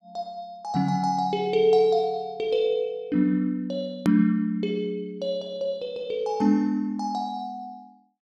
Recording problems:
click at an edit; at 4 s

